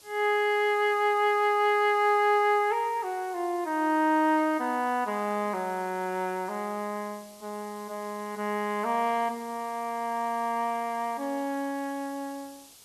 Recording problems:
background hiss; SNR 23 dB

